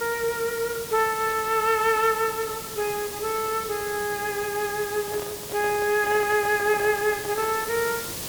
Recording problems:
background hiss; SNR 9 dB
microphone handling noise; from 5 to 7.5 s; peak -10 dB vs average level

